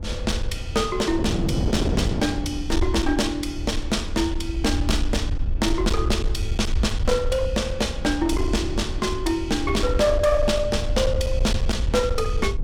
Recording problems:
distorted audio; hard clipping, uneven, signal-to-distortion ratio 11 dB
low-frequency rumble; below 72 Hz, SNR 5 dB
wind on the microphone; below 330 Hz, SNR 9 dB

